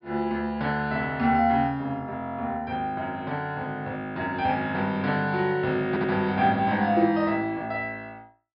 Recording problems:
treble missing; nothing above 5.5 kHz
stutter; at 6 s

